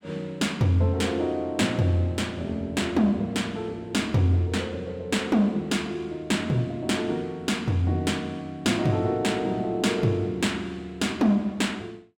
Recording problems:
none

